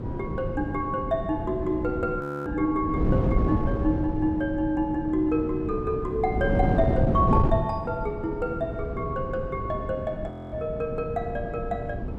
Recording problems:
wind noise; below 290 Hz, SNR 2 dB
frozen audio; at 2 s and at 10 s

